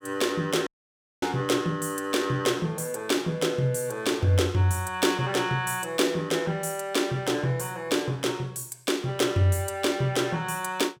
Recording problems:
audio cutting out; at 0.5 s for 0.5 s

